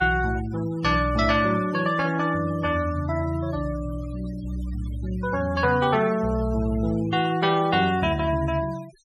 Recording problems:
noise reduction artefacts; signal-to-artefact ratio 19 dB

